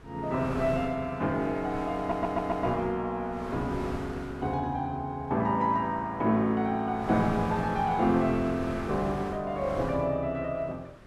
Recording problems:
wind on the microphone; below 1.1 kHz, SNR 11 dB
stutter; at 2 s

